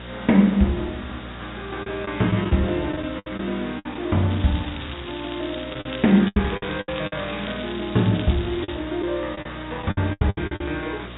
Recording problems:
treble cut off; nothing above 3.7 kHz
mains hum; 60 Hz, harmonics up to 660 Hz, SNR 17 dB
hiss; SNR 16 dB
packet loss; 9% of the sound replaced, filled with the last packet
crackling; from 4.5 to 9 s; loose cable, SNR 14 dB

